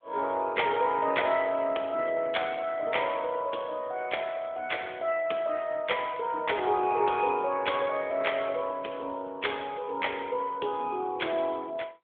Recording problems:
phone line; 320 Hz to 3.4 kHz, AMR-NB

